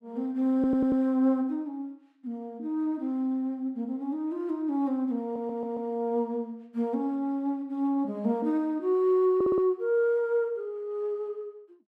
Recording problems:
stutter; at 0.5 s, at 5 s and at 9.5 s

